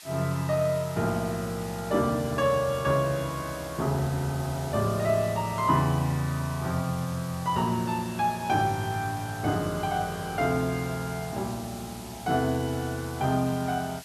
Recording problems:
background hiss; slope +3 dB per octave, SNR 16 dB

